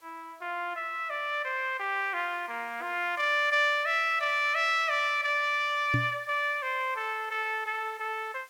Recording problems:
background hiss; SNR 29 dB
microphone thump; at 6 s; peak +2 dB vs average level

